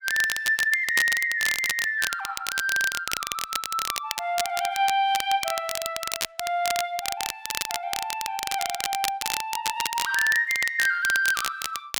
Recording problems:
crackle; vinyl, SNR 5 dB

